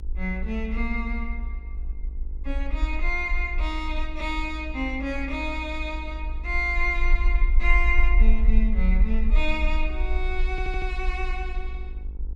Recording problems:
hum; 50 Hz, harmonics up to 1 kHz, SNR 22 dB
low-frequency rumble; below 50 Hz, strongest tone 24 Hz, SNR -1 dB
stutter; at 11 s

